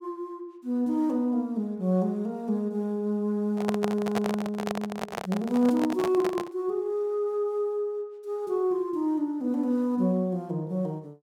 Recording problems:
microphone handling noise; from 3.5 to 6.5 s; peak +2 dB vs average level

